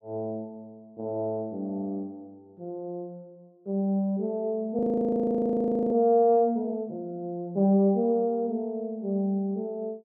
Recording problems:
audio freezing; at 5 s for 1 s

